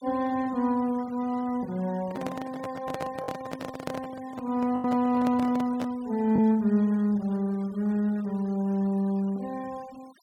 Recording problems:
denoising artefacts; signal-to-artefact ratio 24 dB
packet loss; 1.4% of the sound replaced, filled with the last packet
handling noise; from 2 to 6 s; peak -2 dB vs average level

